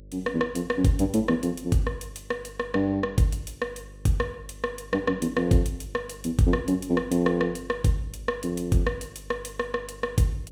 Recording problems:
hum; 50 Hz, harmonics up to 600 Hz, SNR 20 dB

